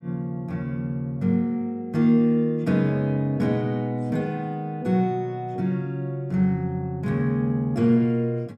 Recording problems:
none

